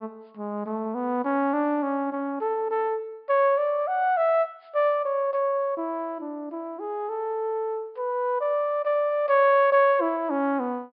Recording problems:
treble cut off; nothing above 5.5 kHz

